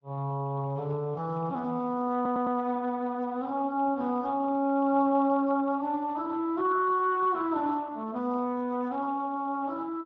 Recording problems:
lossy codec; Speex, log-spectral distance 2 dB
stutter; at 2 s

